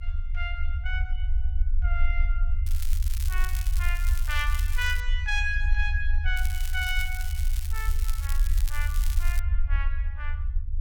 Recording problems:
rumble; below 56 Hz, strongest tone 24 Hz, SNR -4 dB
crackle; from 2.5 to 5 s and from 6.5 to 9.5 s; loose cable, SNR 8 dB

